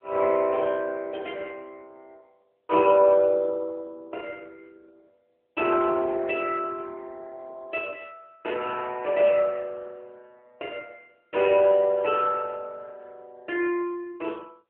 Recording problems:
telephone audio; 320 Hz to 3.1 kHz, AMR-NB

